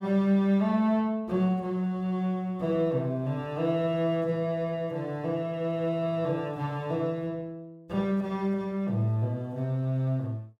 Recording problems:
none

